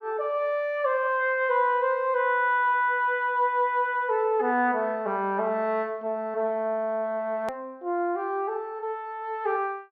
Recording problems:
click at an edit; at 7.5 s

